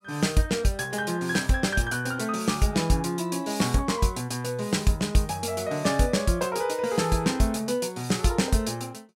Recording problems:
none

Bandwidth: 16 kHz